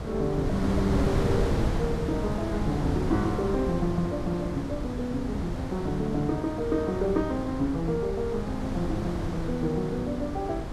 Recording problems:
wind noise; below 360 Hz, SNR 3 dB

